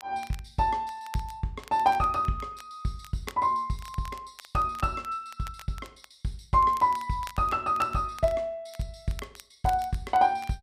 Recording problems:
crackling; vinyl, SNR 21 dB

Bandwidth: 14.5 kHz